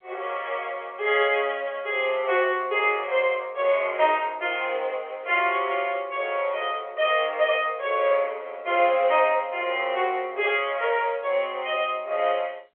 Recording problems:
phone line; 370 Hz to 3.5 kHz, G.711

